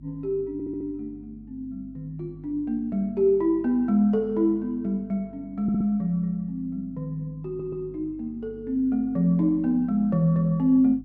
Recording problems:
mains hum; 50 Hz, harmonics up to 300 Hz, SNR 23 dB
stutter; at 0.5 s, at 5.5 s and at 7.5 s

